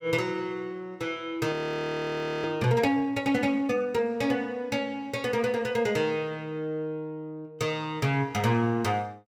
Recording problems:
frozen audio; at 1.5 s for 1 s

